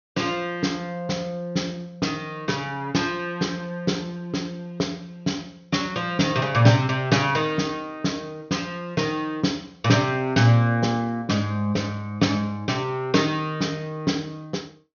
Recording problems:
treble cut off; nothing above 6.5 kHz

